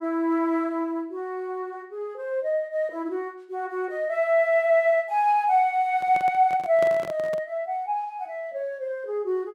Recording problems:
microphone handling noise; from 6 to 7.5 s; peak -5 dB vs average level

